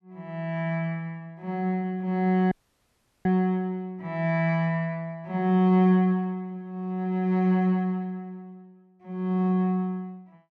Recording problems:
audio cutting out; at 2.5 s for 0.5 s

